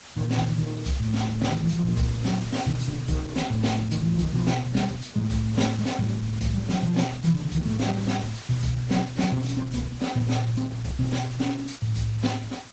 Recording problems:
lossy codec; AAC, then Opus, log-spectral distance 5 dB, nothing above 7.8 kHz
background hiss; slope -1 dB per octave, SNR 18 dB

